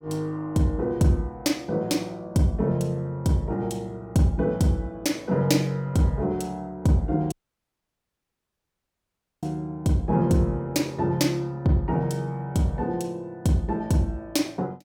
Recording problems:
audio cutting out; at 7.5 s for 2 s

